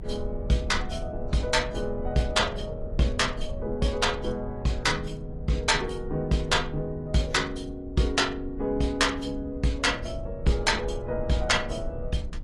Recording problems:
lossy compression; AAC, log-spectral distance 2 dB
rumble; below 74 Hz, SNR 11 dB

